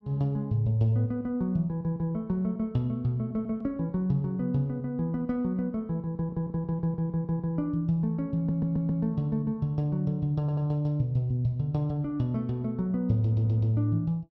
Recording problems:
stutter; 4 times, first at 6 s

